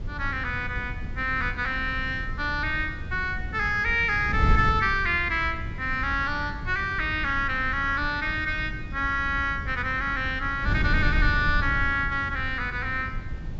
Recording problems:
low-pass filter; nothing above 8 kHz
wind on the microphone; below 110 Hz, SNR 7 dB

